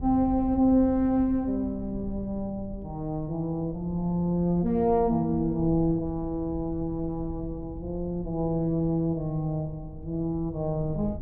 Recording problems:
low-frequency rumble; below 110 Hz, SNR 14 dB

